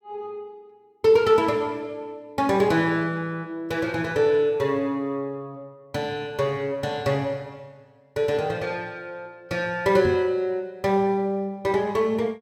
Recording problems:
microphone thump; at 10 s; peak -2 dB vs average level

